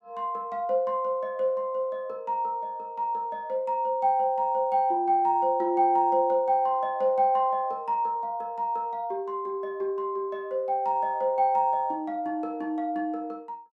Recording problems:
none

